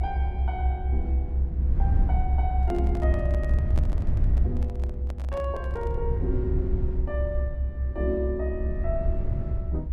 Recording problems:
rumble; below 70 Hz, SNR -7 dB
microphone handling noise; from 2.5 to 6 s; peak -1 dB vs average level

